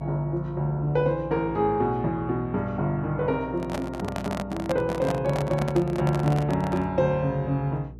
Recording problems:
hum; 60 Hz, harmonics up to 480 Hz, SNR 17 dB
handling noise; from 3.5 to 7 s; peak 0 dB vs average level

